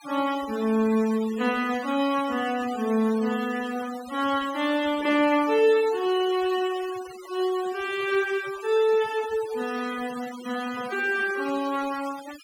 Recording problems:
noise reduction artefacts; signal-to-artefact ratio 16 dB

